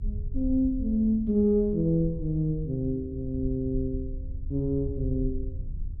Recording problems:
low-frequency rumble; below 78 Hz, SNR 9 dB

